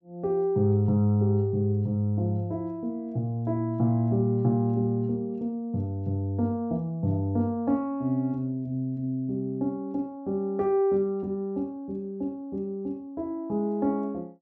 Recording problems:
treble cut off; nothing above 7.8 kHz

